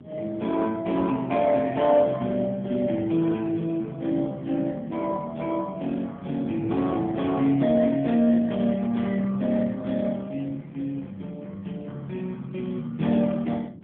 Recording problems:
telephone audio; 130 Hz to 3.3 kHz, AMR-NB
wind noise; below 300 Hz, SNR 16 dB

